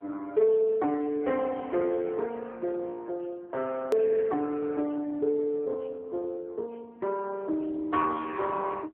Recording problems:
phone line; 260 Hz to 3.3 kHz, AMR-NB
hard cut with a click; at 4 s

